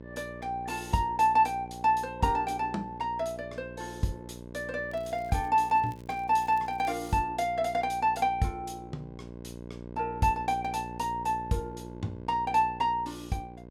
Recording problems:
electrical hum; 60 Hz, harmonics up to 1.1 kHz, SNR 15 dB
crackle; from 5 to 7 s; loose cable, SNR 29 dB

